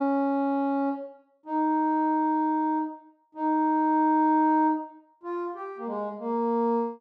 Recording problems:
none

